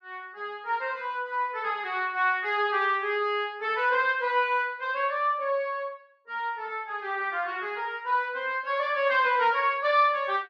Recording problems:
none

